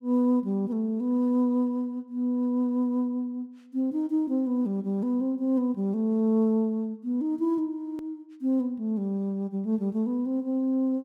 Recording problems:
hard cut with a click; at 8 s

